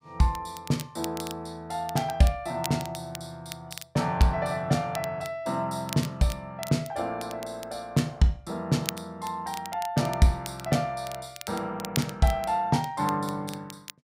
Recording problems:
crackling; vinyl, SNR 13 dB

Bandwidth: 15.5 kHz